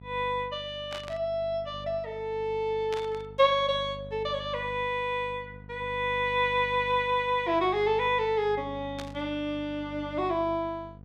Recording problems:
hum; 50 Hz, harmonics up to 750 Hz, SNR 17 dB
static burst; at 1 s, at 3 s and at 9 s; peak -6 dB vs average level

